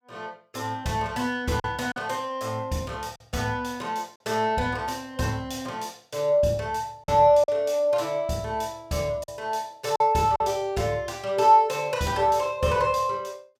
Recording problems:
lost packets; 2% of the sound replaced, filled with silence

